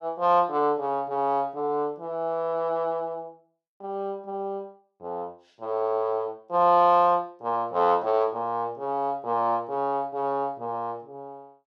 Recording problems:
none

